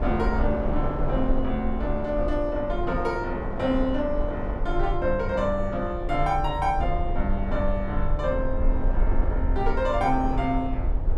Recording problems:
rumble; below 50 Hz, strongest tone 20 Hz, SNR 4 dB
wind noise; below 730 Hz, SNR 8 dB

